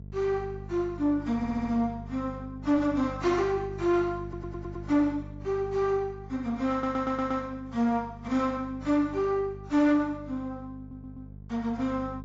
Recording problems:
lossy codec; AAC, log-spectral distance 2 dB
distorted audio; soft clipping, signal-to-distortion ratio 11 dB
hum; 50 Hz, harmonics up to 450 Hz, SNR 15 dB
audio stuttering; 4 times, first at 1.5 s

